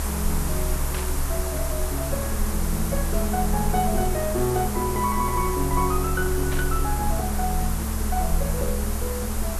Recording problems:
hiss; SNR 4 dB
rumble; below 68 Hz, strongest tone 28 Hz, SNR 3 dB
burst of static; at 1 s and at 6.5 s; peak -4 dB vs average level

